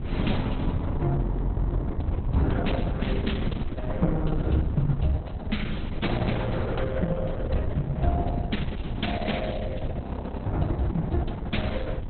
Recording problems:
lossy compression; Opus, log-spectral distance 4 dB, nothing above 4 kHz
wind on the microphone; below 150 Hz, SNR 2 dB
audio freezing; at 1 s for 0.5 s and at 10 s

